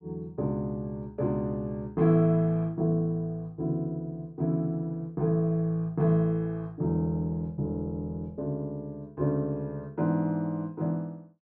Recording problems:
none

